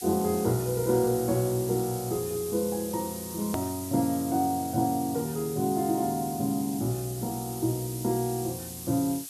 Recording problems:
hiss; SNR 10 dB
edit click; at 3.5 s

